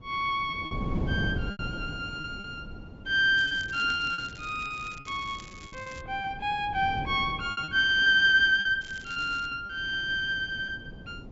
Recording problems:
low-pass filter; nothing above 7.5 kHz
wind on the microphone; below 260 Hz, SNR 14 dB
packet loss; 8% of the sound replaced, filled with repeated pitch periods
crackle; from 3.5 to 6 s and at 9 s; loose cable, SNR 23 dB

